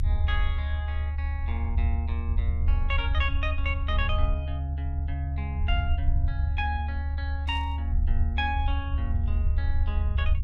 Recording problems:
rumble; below 76 Hz, SNR -6 dB
burst of static; at 7.5 s; peak -14 dB vs average level

